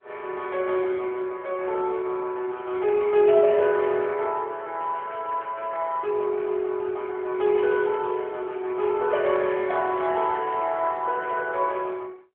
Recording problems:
phone line; 300 Hz to 3.4 kHz, AMR-NB

